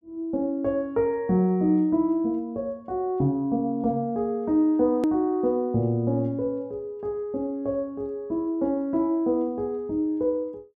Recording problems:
edit click; at 5 s

